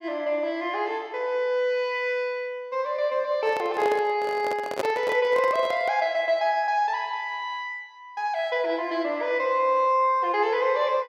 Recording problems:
microphone handling noise; from 3.5 to 6 s; peak +2 dB vs average level

